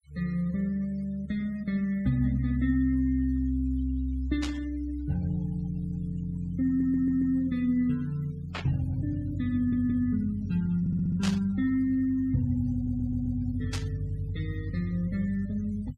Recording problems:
noise reduction artefacts; signal-to-artefact ratio 25 dB
burst of static; 4 times, first at 4.5 s; peak -2 dB vs average level
audio stuttering; 4 times, first at 6.5 s

